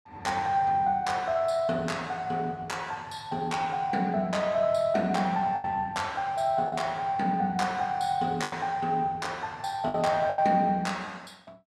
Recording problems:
packet loss; 3% of the sound replaced, filled with the last packet

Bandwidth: 15 kHz